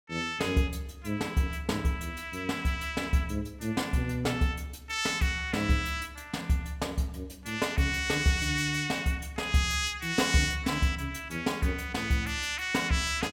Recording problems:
none

